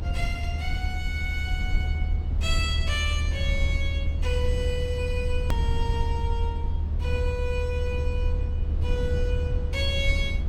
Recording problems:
electrical hum; 60 Hz, harmonics up to 1.1 kHz, SNR 22 dB
rumble; below 78 Hz, SNR -4 dB
hard cut with a click; at 5.5 s

